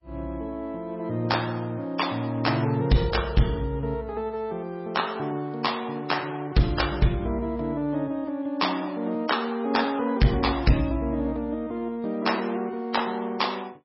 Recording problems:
codec artefacts; MP3, log-spectral distance 3 dB, nothing above 5.5 kHz
distortion; hard clipping, signal-to-distortion ratio 12 dB

